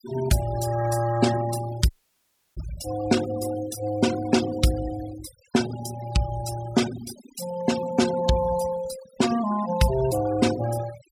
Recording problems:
noise reduction artefacts; signal-to-artefact ratio 12 dB
audio cutting out; at 2 s for 0.5 s

